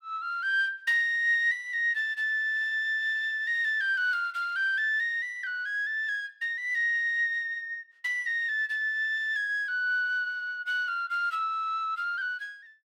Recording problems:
none

